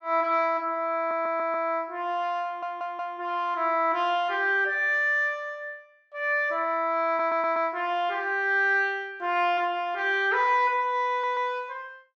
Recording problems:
stutter; 4 times, first at 1 s

